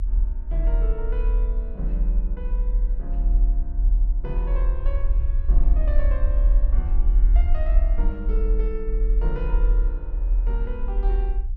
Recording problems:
low-frequency rumble; below 42 Hz, strongest tone 40 Hz, SNR -13 dB

